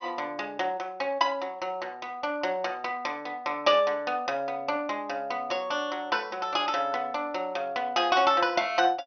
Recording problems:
treble cut off; nothing above 6.1 kHz

